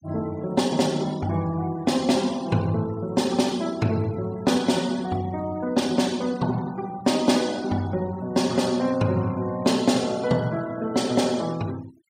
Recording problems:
denoising artefacts; signal-to-artefact ratio 21 dB

